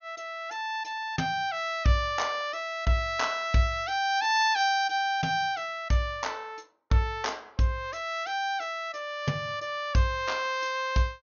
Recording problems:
treble cut off; nothing above 6.7 kHz

